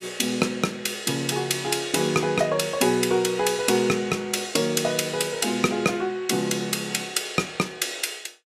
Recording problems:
none

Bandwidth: 14.5 kHz